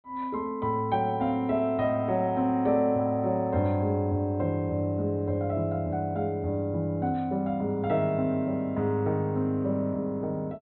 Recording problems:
treble missing; nothing above 4.4 kHz

